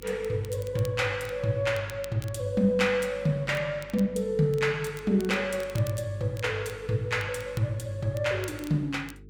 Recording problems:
mains hum; 50 Hz, harmonics up to 450 Hz, SNR 21 dB
crackle; vinyl, SNR 22 dB

